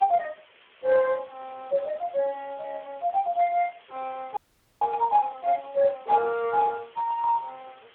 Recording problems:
telephone audio; 320 Hz to 2.5 kHz, Speex
background hiss; SNR 27 dB
audio freezing; at 4.5 s

